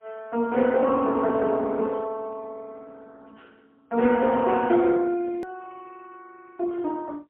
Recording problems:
phone line; 280 Hz to 2.5 kHz, AMR-NB, then MP3
hard cut with a click; at 5.5 s

